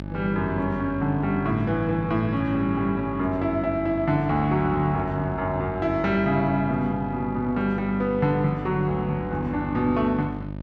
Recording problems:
hum; 50 Hz, harmonics up to 1.2 kHz, SNR 10 dB

